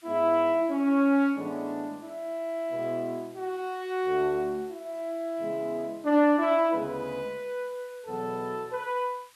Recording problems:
hiss; SNR 28 dB

